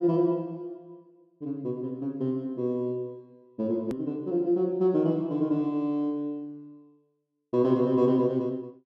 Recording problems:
click at an edit; at 4 s

